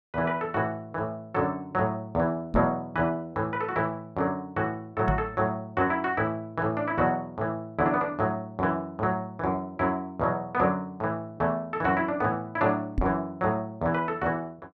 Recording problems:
knock on the microphone; at 2.5 s, at 5 s and at 13 s; peak +3 dB vs average level

